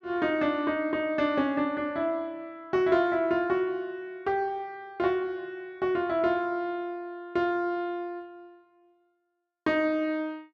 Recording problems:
none

